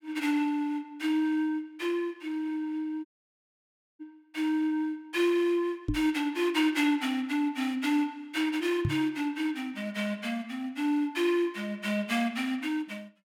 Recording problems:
audio cutting out; at 3 s for 1 s
microphone thump; at 6 s and at 9 s; peak +3 dB vs average level

